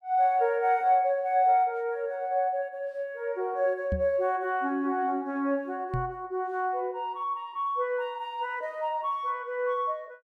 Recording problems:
microphone bump; at 4 s and at 6 s; peak +1 dB vs average level

